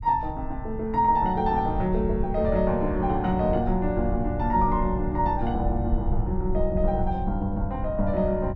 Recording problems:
low-frequency rumble; below 82 Hz, SNR 6 dB

